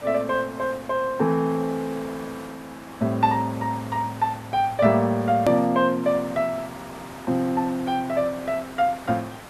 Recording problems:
background hiss; SNR 17 dB
click at an edit; at 5.5 s

